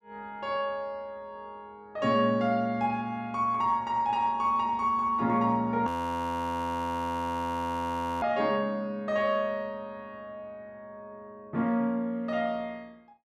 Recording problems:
frozen audio; at 6 s for 2.5 s

